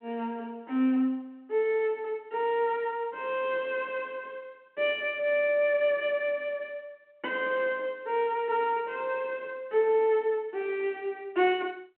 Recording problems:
phone line; 240 Hz to 3.5 kHz, G.726

